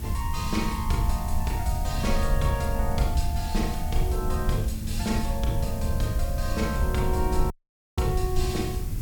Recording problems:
hiss; slope 0 dB per octave, SNR 13 dB
low-frequency rumble; below 76 Hz, SNR 0 dB
audio cutting out; at 7.5 s

